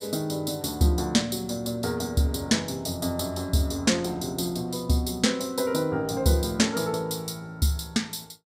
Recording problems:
none

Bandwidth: 15.5 kHz